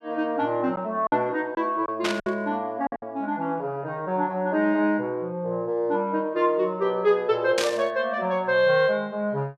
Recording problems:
packet loss; 3% of the sound replaced, filled with silence
burst of static; at 2 s and at 7.5 s; peak +2 dB vs average level

